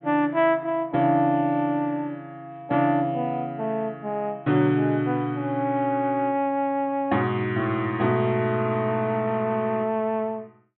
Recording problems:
treble cut off; nothing above 4 kHz

